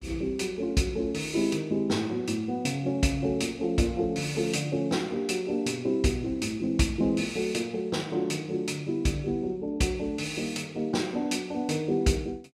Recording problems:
none

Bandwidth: 14.5 kHz